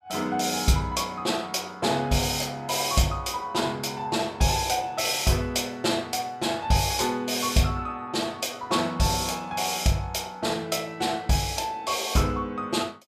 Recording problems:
none

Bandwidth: 14.5 kHz